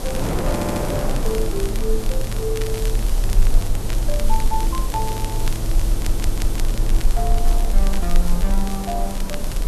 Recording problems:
hiss; SNR 7 dB
rumble; below 36 Hz, strongest tone 20 Hz, SNR -3 dB
wind noise; below 620 Hz, SNR 2 dB
crackling; vinyl, SNR 9 dB
stutter; at 0.5 s and at 6 s

